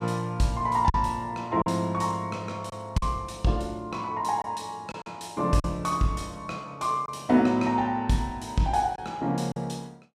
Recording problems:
packet loss; 3% of the sound replaced, filled with silence

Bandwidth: 14.5 kHz